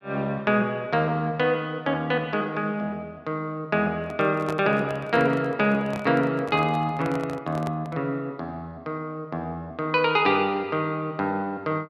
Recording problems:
handling noise; from 4 to 8 s; peak -4 dB vs average level

